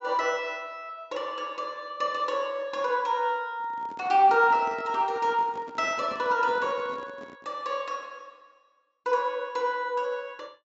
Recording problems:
treble missing; nothing above 8 kHz
microphone handling noise; from 3.5 to 7.5 s; peak -10 dB vs average level

